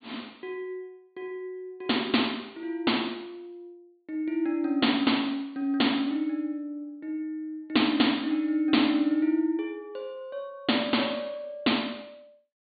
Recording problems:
low-pass filter; nothing above 4.6 kHz

